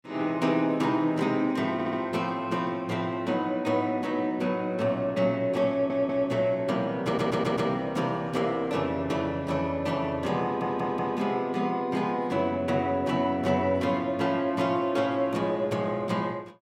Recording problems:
audio stuttering; 4 times, first at 1.5 s

